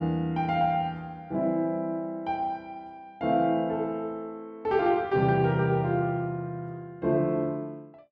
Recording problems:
none

